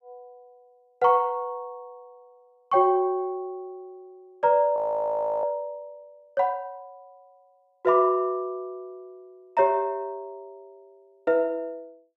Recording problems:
audio freezing; at 5 s for 0.5 s

